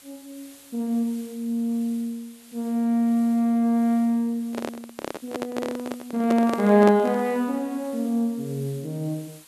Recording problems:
background hiss; slope +1 dB per octave, SNR 25 dB
microphone handling noise; from 4.5 to 7.5 s; peak +1 dB vs average level

